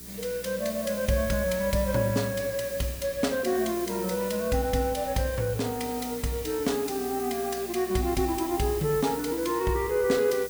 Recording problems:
hum; 60 Hz, harmonics up to 420 Hz, SNR 22 dB
hiss; slope +2 dB per octave, SNR 11 dB

